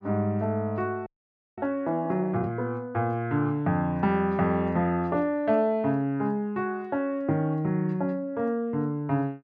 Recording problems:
frozen audio; at 1 s for 0.5 s

